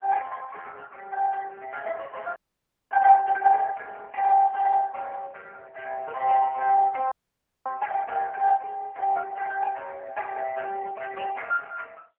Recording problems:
telephone audio; 280 Hz to 2.8 kHz, AMR-NB
audio freezing; at 2.5 s for 0.5 s and at 7 s for 0.5 s

